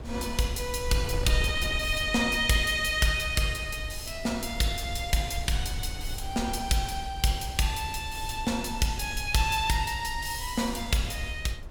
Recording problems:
wind noise; below 94 Hz, SNR 11 dB

